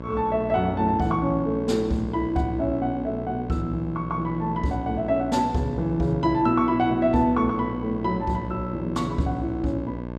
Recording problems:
electrical hum; 60 Hz, harmonics up to 1.6 kHz, SNR 10 dB

